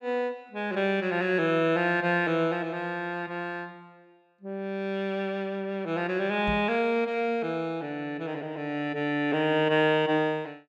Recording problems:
microphone bump; at 6.5 s; peak -4 dB vs average level

